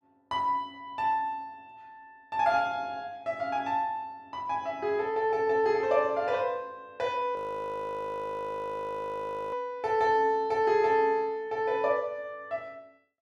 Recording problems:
frozen audio; at 7.5 s for 2 s

